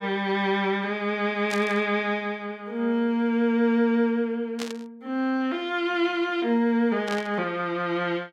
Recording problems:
static burst; at 1.5 s, at 4.5 s and at 7 s; peak -4 dB vs average level

